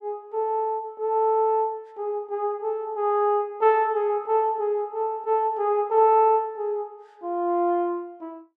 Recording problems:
none

